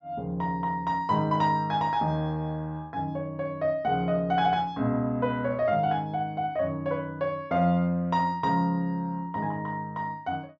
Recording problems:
low-pass filter; nothing above 8 kHz

